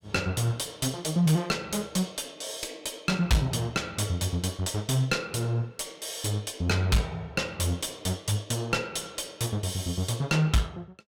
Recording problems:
distortion; soft clipping, signal-to-distortion ratio 7 dB

